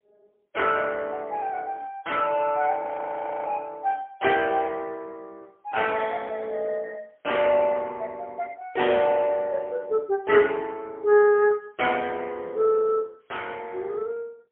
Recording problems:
telephone audio; 280 Hz to 3.2 kHz, AMR-NB, then MP3
audio freezing; at 3 s for 0.5 s

